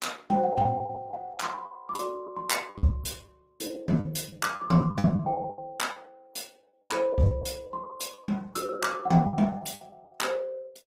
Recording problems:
codec artefacts; Opus, log-spectral distance 3 dB, nothing above 15.5 kHz
lost packets; 16% of the sound replaced, filled with the last packet

